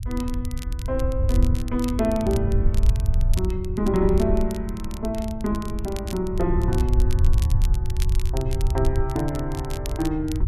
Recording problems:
rumble; below 82 Hz, SNR -1 dB
crackle; vinyl, SNR 15 dB

